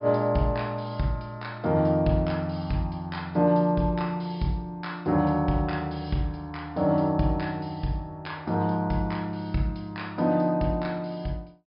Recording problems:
low-pass filter; nothing above 5.5 kHz

